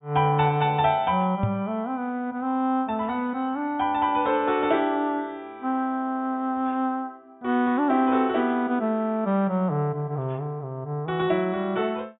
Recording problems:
treble cut off; nothing above 4 kHz
knock on the microphone; at 1.5 s; peak +3 dB vs average level

